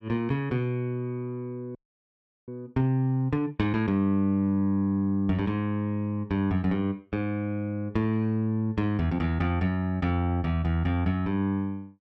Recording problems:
audio freezing; at 2 s for 0.5 s

